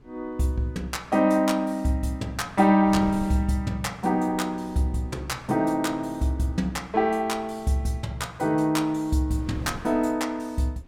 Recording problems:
wind on the microphone; below 350 Hz, SNR 19 dB

